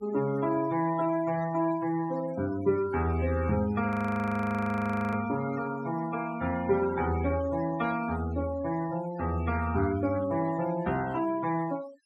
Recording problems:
denoising artefacts; signal-to-artefact ratio 16 dB
audio freezing; at 4 s for 1 s

